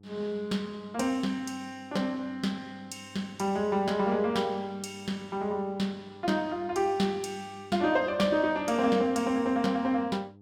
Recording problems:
hum; 50 Hz, harmonics up to 800 Hz, SNR 24 dB

